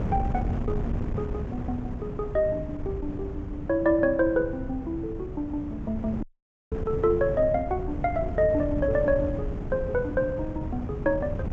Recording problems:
low-pass filter; nothing above 8 kHz
wind noise; below 200 Hz, SNR 6 dB
audio cutting out; at 6 s

